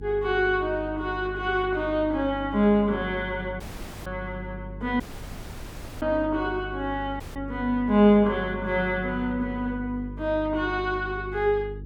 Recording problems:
electrical hum; 50 Hz, harmonics up to 450 Hz, SNR 13 dB
audio cutting out; at 3.5 s, at 5 s for 1 s and at 7 s

